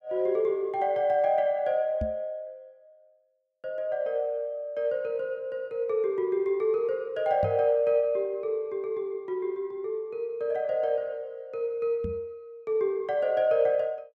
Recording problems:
knock on the microphone; at 2 s, at 7.5 s and at 12 s; peak -1 dB vs average level

